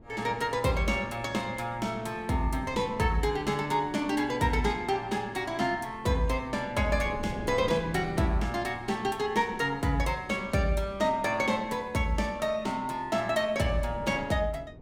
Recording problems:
wind on the microphone; below 320 Hz, SNR 17 dB

